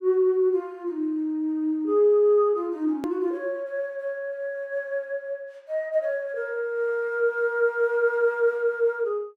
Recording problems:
hard cut with a click; at 3 s

